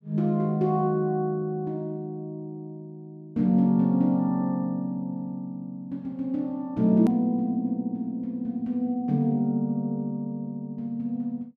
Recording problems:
click at an edit; at 7 s

